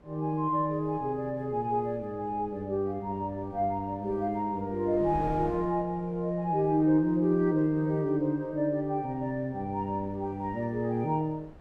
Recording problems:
wind noise; below 430 Hz, SNR 21 dB

